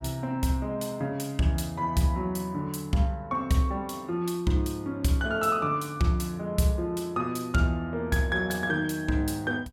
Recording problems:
none

